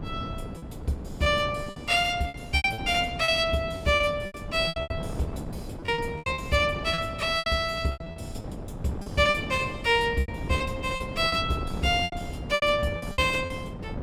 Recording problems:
wind on the microphone; below 350 Hz, SNR 11 dB
lost packets; 13% of the sound replaced, filled with repeated pitch periods

